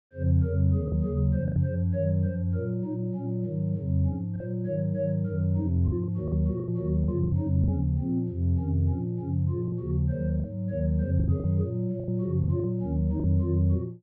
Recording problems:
lost packets; 7% of the sound replaced, filled with the last packet

